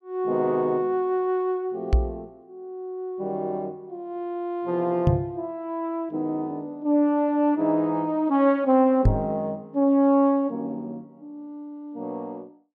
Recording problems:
microphone bump; at 2 s, at 5 s and at 9 s; peak +8 dB vs average level

